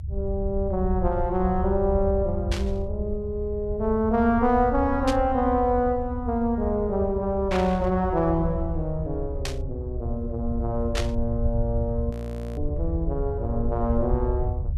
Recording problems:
rumble; below 80 Hz, SNR 5 dB
static burst; 5 times, first at 2.5 s; peak 0 dB vs average level
audio freezing; at 12 s

